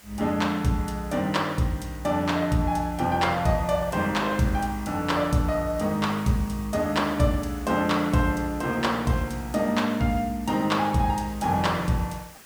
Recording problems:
background hiss; slope -1 dB per octave, SNR 21 dB

